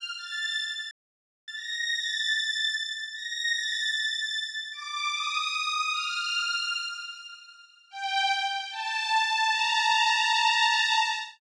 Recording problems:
dropout; at 1 s for 0.5 s

